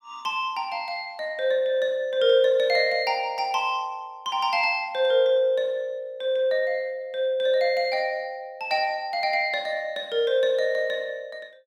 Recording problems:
none

